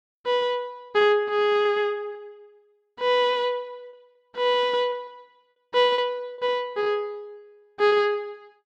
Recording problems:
lost packets; 6% of the sound replaced, filled with repeated pitch periods

